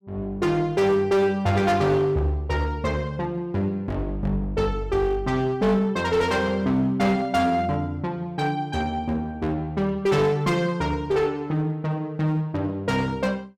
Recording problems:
distortion; hard clipping, uneven, signal-to-distortion ratio 10 dB

